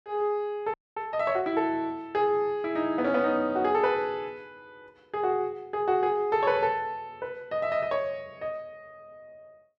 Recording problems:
audio freezing; at 0.5 s

